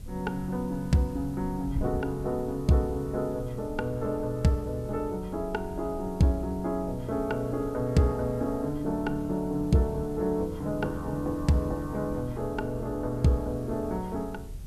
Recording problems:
background hiss; slope +3 dB per octave, SNR 27 dB
wind noise; below 110 Hz, SNR 13 dB

